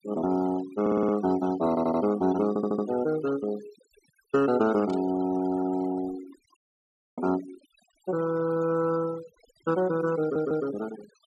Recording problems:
denoising artefacts; signal-to-artefact ratio 17 dB
stutter; 4 times, first at 1 s
burst of static; at 5 s; peak -17 dB vs average level
dropout; at 6.5 s for 0.5 s

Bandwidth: 13.5 kHz